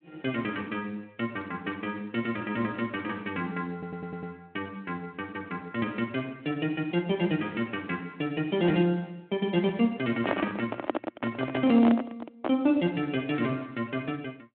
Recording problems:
phone line; 190 Hz to 3.5 kHz, Speex
stutter; at 3.5 s
handling noise; from 10 to 13 s; peak +6 dB vs average level

